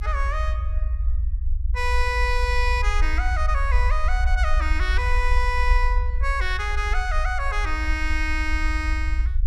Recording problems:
low-frequency rumble; below 58 Hz, SNR -1 dB

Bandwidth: 14.5 kHz